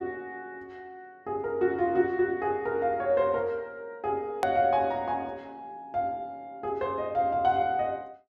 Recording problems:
hard cut with a click; at 4.5 s

